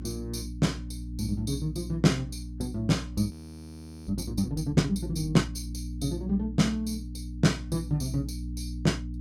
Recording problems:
hum; 60 Hz, harmonics up to 300 Hz, SNR 9 dB
audio freezing; at 3.5 s for 1 s

